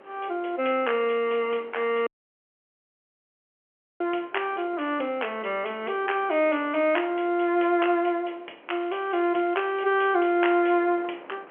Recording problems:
telephone audio; 280 Hz to 3.2 kHz, G.711
wind on the microphone; below 1.2 kHz, SNR 23 dB
dropout; at 2 s for 2 s
crackling; from 9 to 10 s; loose cable, SNR 27 dB

